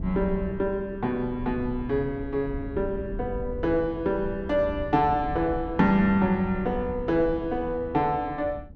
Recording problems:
wind on the microphone; below 110 Hz, SNR 12 dB

